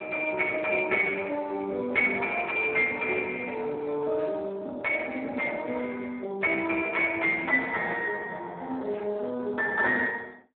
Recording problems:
phone line; 240 Hz to 3.8 kHz, Speex

